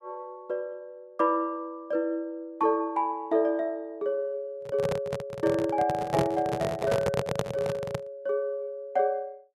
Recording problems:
microphone handling noise; from 4.5 to 8 s; peak +5 dB vs average level

